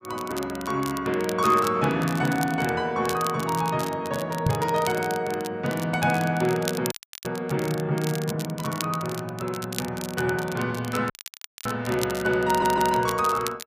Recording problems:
crackle; vinyl, SNR 12 dB
microphone bump; at 4.5 s; peak +5 dB vs average level
dropout; at 7 s and at 11 s for 0.5 s
stutter; at 12 s

